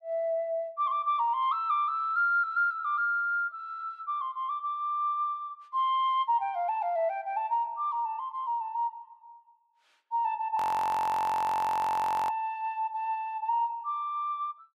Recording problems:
frozen audio; at 11 s for 1.5 s

